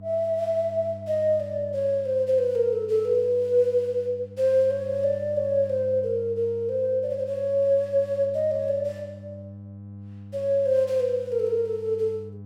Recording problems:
hum; 50 Hz, harmonics up to 500 Hz, SNR 18 dB

